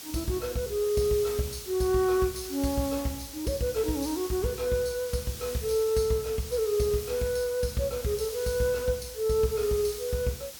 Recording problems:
background hiss; SNR 11 dB

